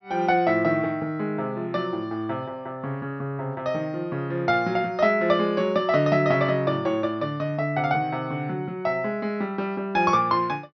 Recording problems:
treble missing; nothing above 5.9 kHz

